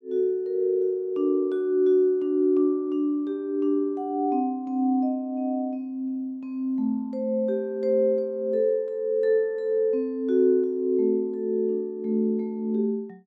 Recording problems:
none

